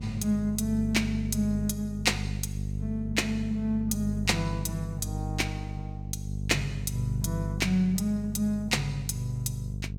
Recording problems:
hum; 50 Hz, harmonics up to 450 Hz, SNR 5 dB

